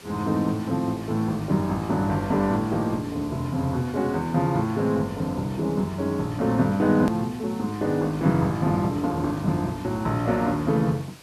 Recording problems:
background hiss; slope -2 dB per octave, SNR 21 dB
edit click; at 7 s

